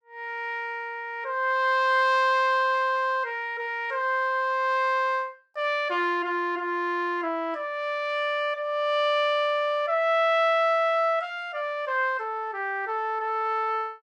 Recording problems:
none

